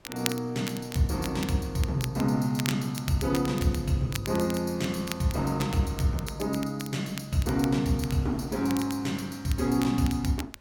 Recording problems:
wind on the microphone; below 910 Hz, SNR 25 dB
crackling; vinyl, SNR 13 dB

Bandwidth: 17 kHz